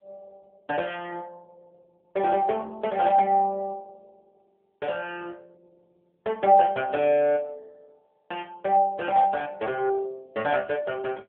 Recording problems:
telephone audio; 220 Hz to 3.3 kHz, AMR-NB

